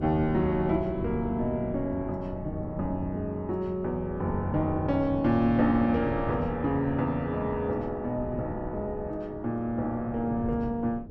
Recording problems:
wind noise; below 260 Hz, SNR 10 dB

